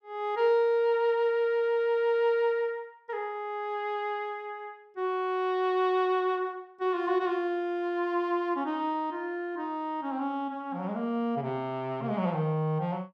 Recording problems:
none

